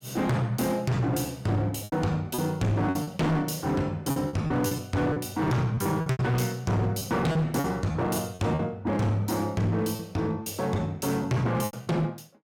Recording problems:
distorted audio; hard clipping, signal-to-distortion ratio 7 dB
lost packets; 9% of the sound replaced, filled with repeated pitch periods

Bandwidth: 17 kHz